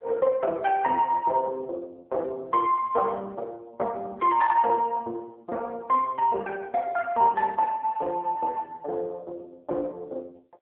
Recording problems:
phone line; 340 Hz to 2.3 kHz, AMR-NB

